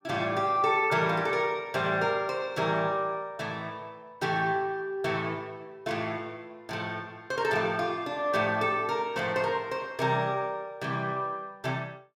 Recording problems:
none

